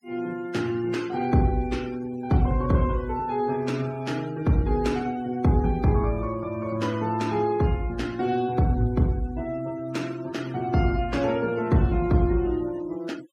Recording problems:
noise reduction artefacts; signal-to-artefact ratio 22 dB

